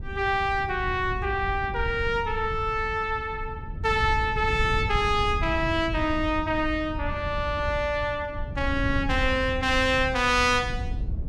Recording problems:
wind noise; below 100 Hz, SNR 8 dB

